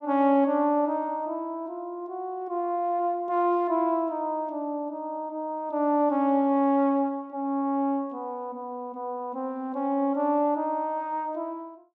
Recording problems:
none

